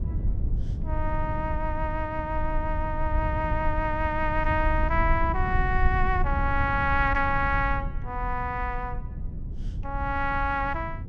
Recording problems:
low-frequency rumble; below 86 Hz, SNR 4 dB

